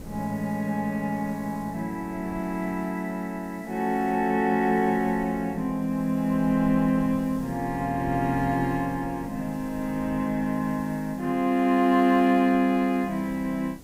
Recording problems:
background hiss; SNR 27 dB
wind noise; below 330 Hz, SNR 20 dB

